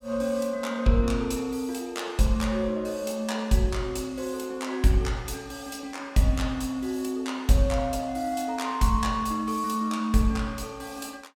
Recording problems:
none

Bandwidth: 17 kHz